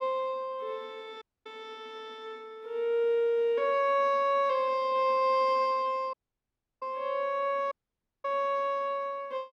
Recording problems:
audio cutting out; at 1 s, at 6 s for 0.5 s and at 7.5 s for 0.5 s

